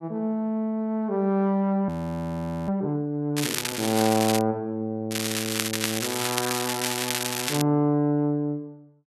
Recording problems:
audio freezing; at 2 s for 1 s
crackle; from 3.5 to 4.5 s and from 5 to 7.5 s; loose cable, SNR 2 dB

